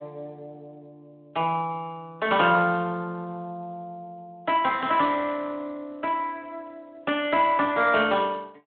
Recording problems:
telephone audio; 190 Hz to 3.7 kHz, Speex

